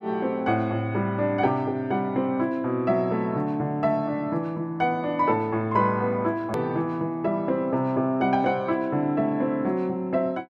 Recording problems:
hard cut with a click; at 6.5 s

